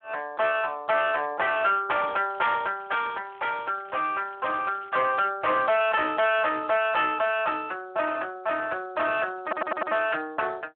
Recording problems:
telephone audio; 320 Hz to 3.3 kHz, Speex
distorted audio; hard clipping, uneven, signal-to-distortion ratio 9 dB
crackling; from 2 to 5 s; loose cable, SNR 27 dB
stutter; at 9.5 s

